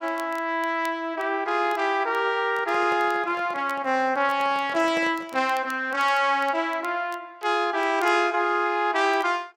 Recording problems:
crackling; vinyl, SNR 27 dB
microphone handling noise; from 2.5 to 5.5 s; peak -7 dB vs average level

